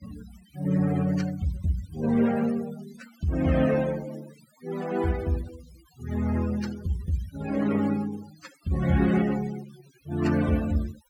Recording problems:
noise reduction artefacts; signal-to-artefact ratio 17 dB

